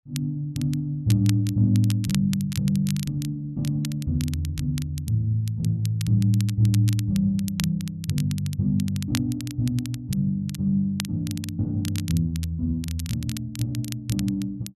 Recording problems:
crackling; vinyl, SNR 14 dB

